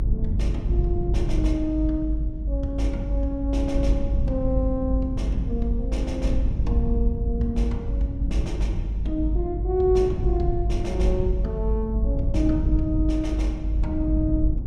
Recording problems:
low-frequency rumble; below 74 Hz, strongest tone 50 Hz, SNR -2 dB

